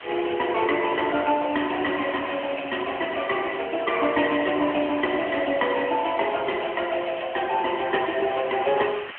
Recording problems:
phone line; 240 Hz to 3.1 kHz, AMR-NB
hiss; SNR 13 dB

